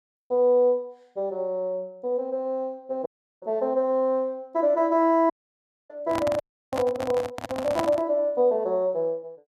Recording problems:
dropout; at 3 s, at 5.5 s for 0.5 s and at 6.5 s
handling noise; from 6 to 8 s; peak +1 dB vs average level

